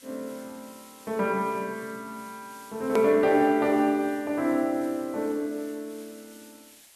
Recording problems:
background hiss; SNR 24 dB
hard cut with a click; at 3 s

